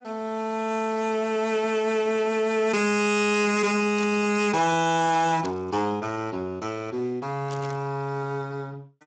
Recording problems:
lossy codec; Speex, log-spectral distance 4 dB, nothing above 7.8 kHz
distortion; hard clipping, uneven, signal-to-distortion ratio 11 dB
burst of static; at 4 s, at 5.5 s and at 7.5 s; peak -9 dB vs average level

